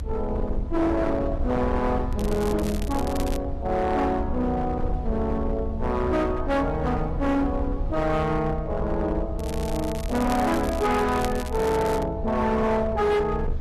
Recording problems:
codec artefacts; Opus, log-spectral distance 2 dB, nothing above 13.1 kHz
distorted audio; hard clipping, signal-to-distortion ratio 10 dB
rumble; below 72 Hz, SNR 7 dB
crackle; from 2 to 3.5 s and from 9.5 to 12 s; loose cable, SNR 16 dB

